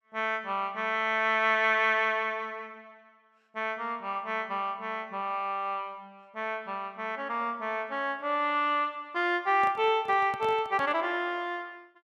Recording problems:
handling noise; from 9.5 to 11 s; peak -9 dB vs average level

